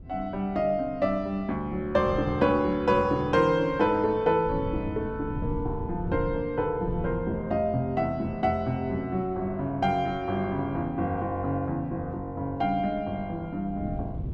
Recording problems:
wind on the microphone; below 170 Hz, SNR 13 dB

